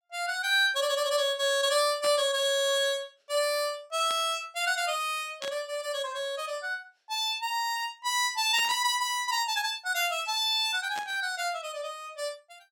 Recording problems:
static burst; 5 times, first at 2 s; peak -7 dB vs average level

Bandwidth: 17.5 kHz